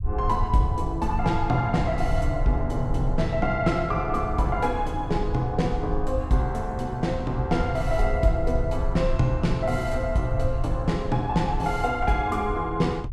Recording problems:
low-frequency rumble; below 80 Hz, SNR 6 dB

